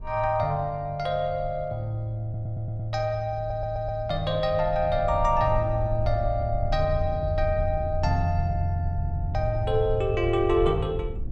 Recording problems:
low-frequency rumble; below 76 Hz, SNR 8 dB
stutter; at 2 s and at 3.5 s

